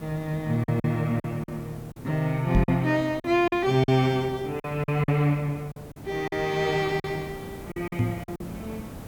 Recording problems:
background hiss; slope -7 dB per octave, SNR 16 dB
lost packets; 9% of the sound replaced, filled with silence
microphone bump; at 2.5 s and at 8 s; peak +5 dB vs average level

